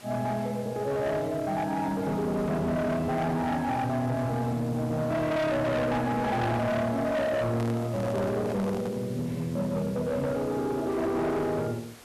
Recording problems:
distorted audio; hard clipping, signal-to-distortion ratio 8 dB
hiss; slope -3 dB per octave, SNR 21 dB
handling noise; from 7.5 to 9 s; peak -5 dB vs average level

